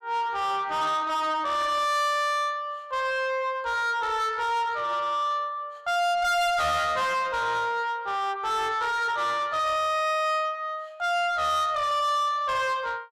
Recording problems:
distortion; soft clipping, signal-to-distortion ratio 6 dB

